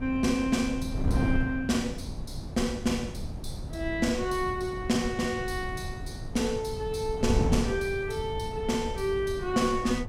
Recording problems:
wind on the microphone; below 180 Hz, SNR 6 dB

